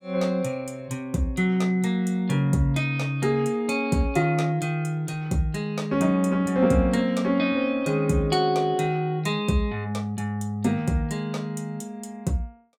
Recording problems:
none

